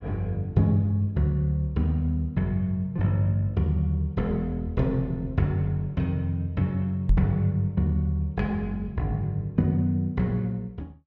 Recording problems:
microphone bump; at 7 s; peak +7 dB vs average level

